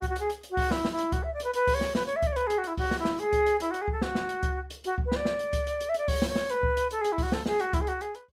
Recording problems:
lossy codec; Opus, log-spectral distance 3 dB, nothing above 18.3 kHz

